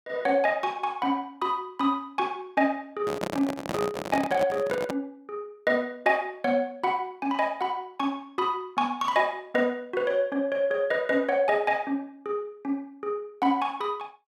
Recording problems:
microphone handling noise; from 3 to 5 s; peak +1 dB vs average level

